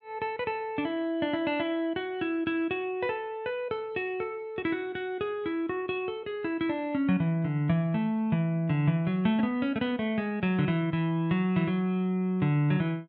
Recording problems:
none

